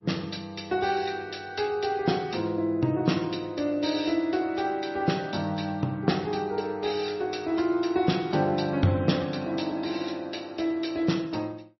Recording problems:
lossy compression; MP3, log-spectral distance 4 dB, nothing above 5.7 kHz

